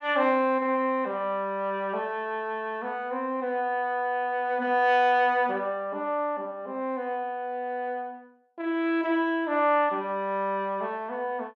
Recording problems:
none

